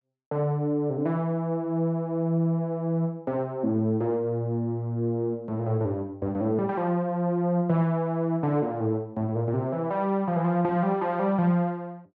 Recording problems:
low-pass filter; nothing above 7.8 kHz

